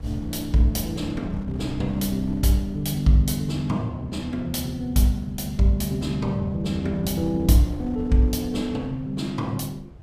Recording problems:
wind noise; below 130 Hz, SNR 15 dB

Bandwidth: 15.5 kHz